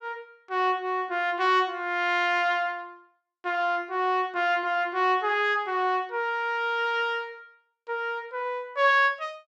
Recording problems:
none

